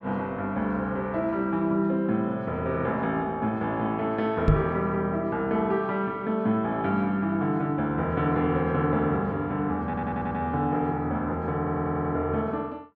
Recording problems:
microphone thump; at 4.5 s; peak +9 dB vs average level
audio stuttering; at 10 s and at 12 s

